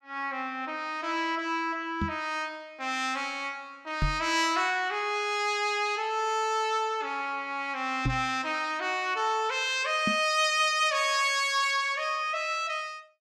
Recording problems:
microphone thump; 4 times, first at 2 s; peak +2 dB vs average level

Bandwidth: 15 kHz